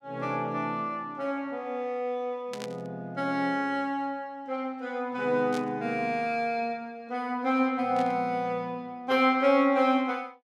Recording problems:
static burst; at 2.5 s, at 5.5 s and at 8 s; peak -9 dB vs average level

